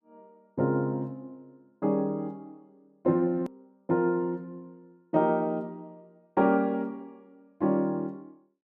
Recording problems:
hard cut with a click; at 3.5 s

